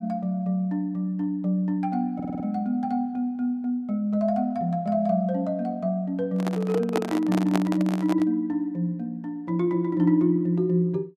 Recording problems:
audio stuttering; at 2 s
handling noise; from 6.5 to 8.5 s; peak +3 dB vs average level

